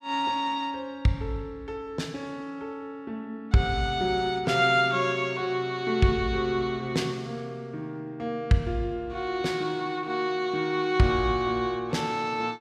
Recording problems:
none

